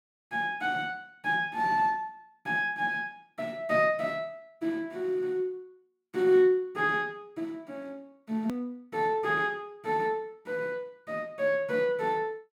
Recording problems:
hard cut with a click; at 8.5 s

